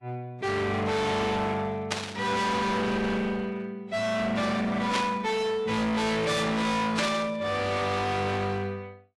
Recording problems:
lossy codec; AAC, log-spectral distance 2 dB, nothing above 11.3 kHz
distortion; hard clipping, uneven, signal-to-distortion ratio 5 dB
burst of static; at 2 s, at 5 s and at 7 s; peak +3 dB vs average level

